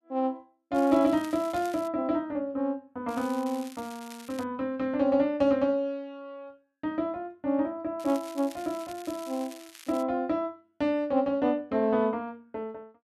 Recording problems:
crackle; from 0.5 to 2 s, from 3 to 4.5 s and from 8 to 10 s; loose cable, SNR 19 dB

